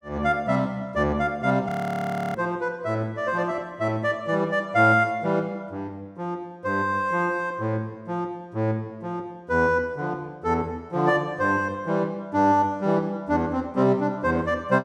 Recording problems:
frozen audio; at 1.5 s for 0.5 s

